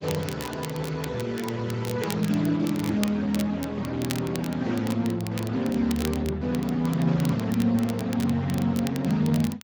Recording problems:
lossy codec; Speex, log-spectral distance 4 dB
crackle; vinyl, SNR 14 dB

